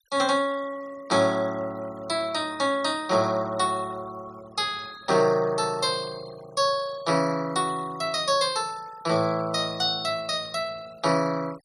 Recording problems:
noise reduction artefacts; signal-to-artefact ratio 20 dB

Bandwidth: 14.5 kHz